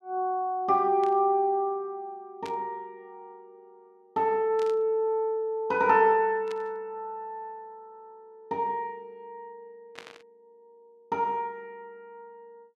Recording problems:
static burst; 5 times, first at 1 s; peak -11 dB vs average level

